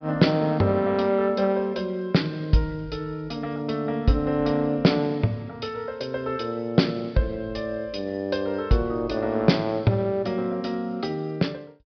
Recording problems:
treble cut off; nothing above 5.5 kHz

